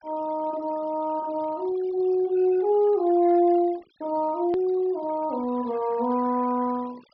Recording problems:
treble cut off; nothing above 5.5 kHz
noise reduction artefacts; signal-to-artefact ratio 24 dB
hard cut with a click; at 4.5 s

